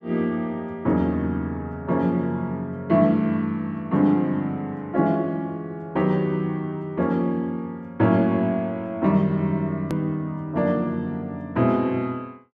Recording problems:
edit click; at 10 s

